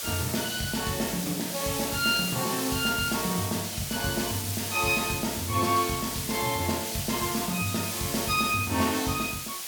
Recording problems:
background hiss; slope +2 dB per octave, SNR 4 dB

